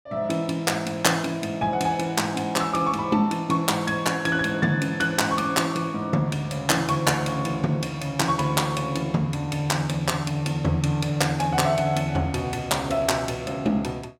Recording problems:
none

